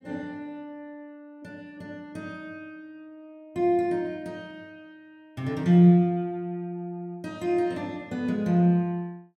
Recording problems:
none

